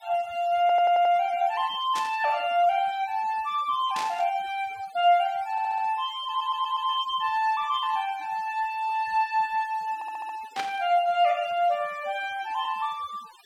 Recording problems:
denoising artefacts; signal-to-artefact ratio 23 dB
audio stuttering; 4 times, first at 0.5 s
burst of static; at 2 s, at 4 s and at 11 s; peak -3 dB vs average level

